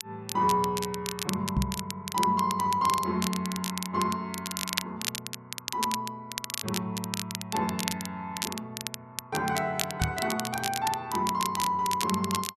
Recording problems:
crackling; vinyl, SNR 5 dB
microphone thump; at 1.5 s and at 10 s; peak +6 dB vs average level

